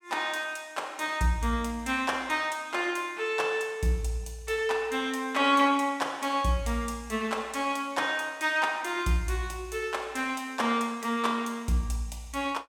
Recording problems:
none

